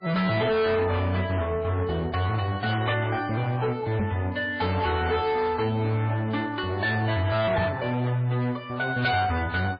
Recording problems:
lossy compression; MP3, then MP3, log-spectral distance 3 dB, nothing above 4.5 kHz
distorted audio; hard clipping, signal-to-distortion ratio 7 dB
knock on the microphone; at 4 s and at 7.5 s; peak +4 dB vs average level

